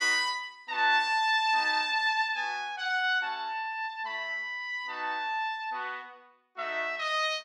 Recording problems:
none

